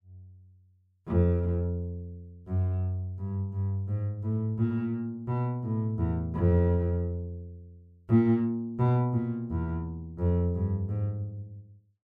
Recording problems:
none

